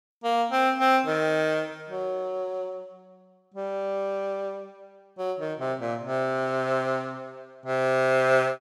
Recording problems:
none

